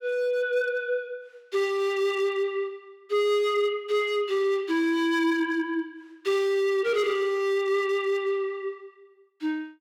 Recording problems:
distortion; hard clipping, signal-to-distortion ratio 11 dB

